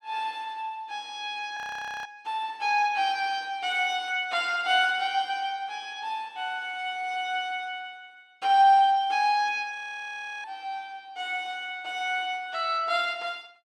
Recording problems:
audio freezing; at 1.5 s and at 10 s for 0.5 s

